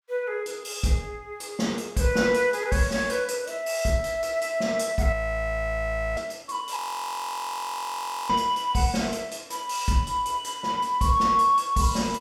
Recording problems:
frozen audio; at 5 s for 1 s and at 7 s for 1.5 s

